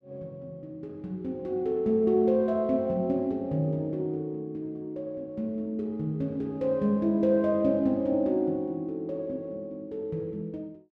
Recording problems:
none

